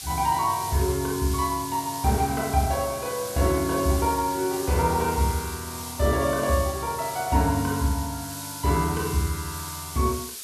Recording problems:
hiss; SNR 10 dB

